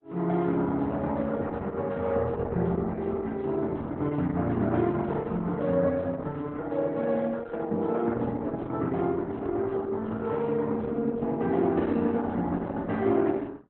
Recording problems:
lossy compression; Opus, log-spectral distance 3 dB, nothing above 3.9 kHz
microphone bump; at 9.5 s; peak -4 dB vs average level

